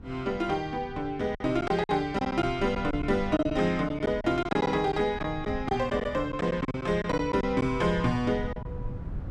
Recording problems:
wind on the microphone; below 140 Hz, SNR 13 dB
lost packets; 8% of the sound replaced, filled with silence

